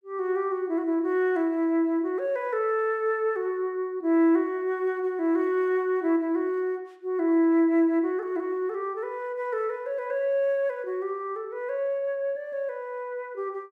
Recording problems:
none

